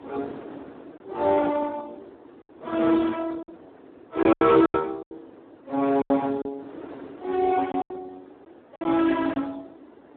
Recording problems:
phone line; 240 Hz to 2.2 kHz, Speex
wind noise; below 620 Hz, SNR 22 dB
packet loss; 8% of the sound replaced, filled with silence

